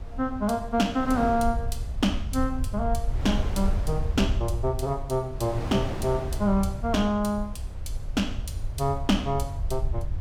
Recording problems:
low-frequency rumble; below 78 Hz, SNR 6 dB
wind noise; below 640 Hz, SNR 13 dB

